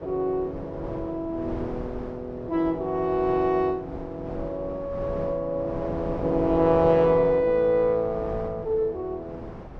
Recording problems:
wind on the microphone; below 550 Hz, SNR 13 dB

